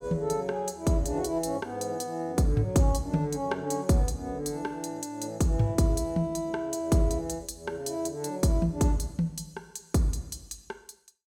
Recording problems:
none

